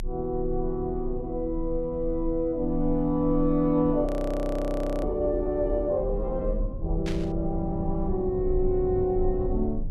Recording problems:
rumble; below 56 Hz, strongest tone 24 Hz, SNR 8 dB
audio freezing; at 4 s for 1 s
static burst; at 7 s; peak -7 dB vs average level

